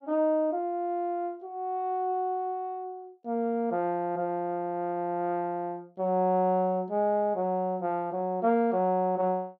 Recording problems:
none

